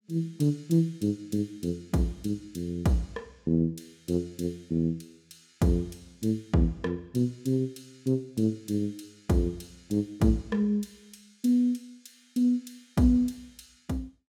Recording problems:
none

